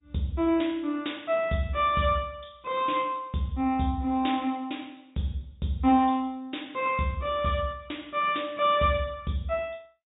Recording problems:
treble cut off; nothing above 3.7 kHz
codec artefacts; MP2, then MP3, log-spectral distance 4 dB

